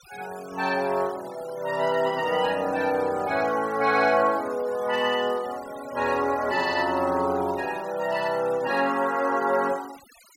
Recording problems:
noise reduction artefacts; signal-to-artefact ratio 20 dB

